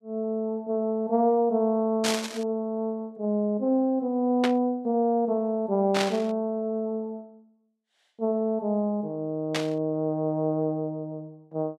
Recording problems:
static burst; 4 times, first at 2 s; peak +3 dB vs average level

